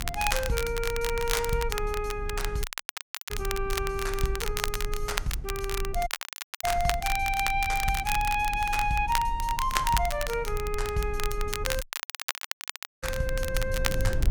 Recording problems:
rumble; below 58 Hz, strongest tone 32 Hz, SNR 7 dB
crackling; vinyl, SNR 5 dB
dropout; at 2.5 s for 0.5 s, at 6 s for 0.5 s and at 12 s for 1 s

